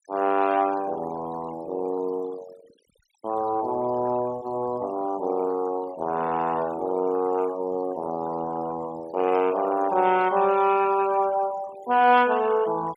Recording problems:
denoising artefacts; signal-to-artefact ratio 19 dB

